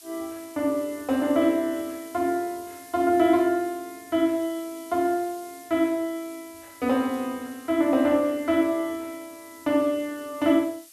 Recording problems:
background hiss; slope +5 dB per octave, SNR 21 dB

